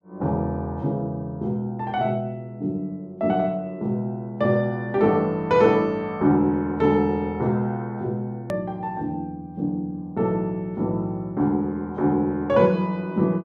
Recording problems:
edit click; at 8.5 s

